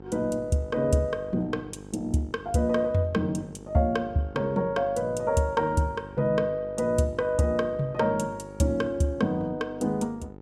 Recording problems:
hum; 50 Hz, harmonics up to 1.4 kHz, SNR 17 dB

